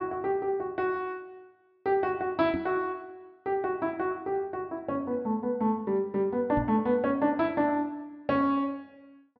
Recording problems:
treble missing; nothing above 5.5 kHz
microphone bump; at 2.5 s and at 6.5 s; peak -1 dB vs average level

